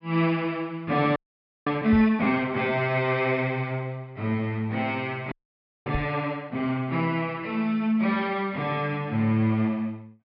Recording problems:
treble missing; nothing above 5.5 kHz
frozen audio; at 1 s for 0.5 s and at 5.5 s for 0.5 s
microphone thump; at 2 s and at 6 s; peak 0 dB vs average level

